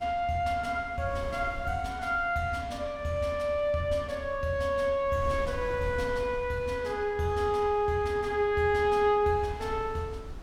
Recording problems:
wind noise; below 120 Hz, SNR 17 dB

